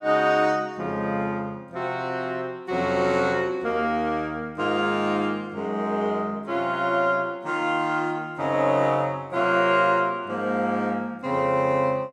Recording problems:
none

